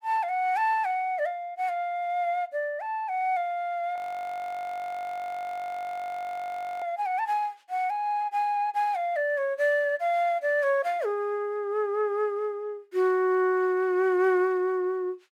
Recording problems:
frozen audio; at 4 s for 3 s

